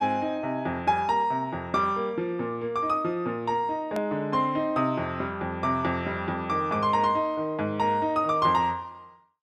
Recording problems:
hard cut with a click; at 4 s

